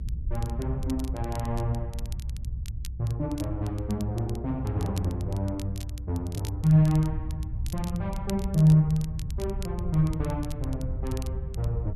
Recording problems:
rumble; below 100 Hz, SNR 7 dB
crackling; vinyl, SNR 20 dB

